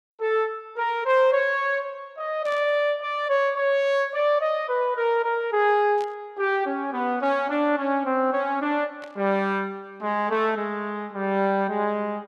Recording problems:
static burst; at 2.5 s, at 6 s and at 9 s; peak -15 dB vs average level

